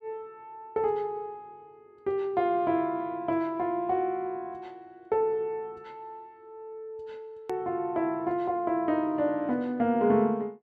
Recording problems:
hard cut with a click; at 7.5 s

